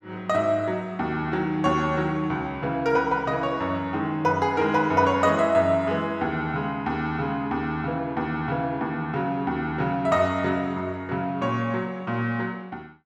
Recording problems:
none

